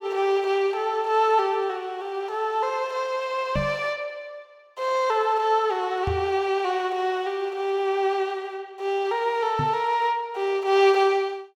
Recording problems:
knock on the microphone; at 3.5 s, at 6 s and at 9.5 s; peak -1 dB vs average level

